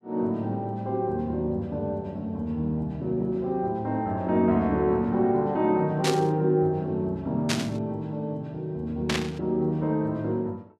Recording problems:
static burst; at 6 s, at 7.5 s and at 9 s; peak +4 dB vs average level

